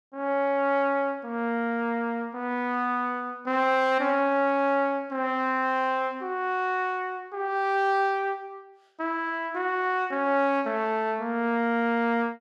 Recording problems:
none

